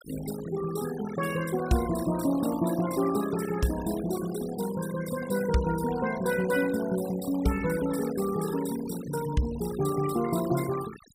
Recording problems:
noise reduction artefacts; signal-to-artefact ratio 14 dB

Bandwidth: 15.5 kHz